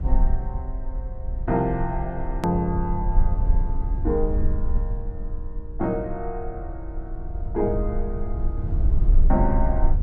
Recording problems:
rumble; below 52 Hz, strongest tone 22 Hz, SNR 0 dB
edit click; at 2.5 s

